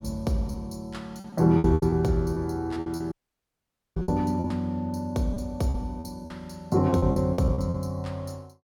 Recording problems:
lost packets; 10% of the sound replaced, filled with repeated pitch periods
dropout; at 3 s for 1 s

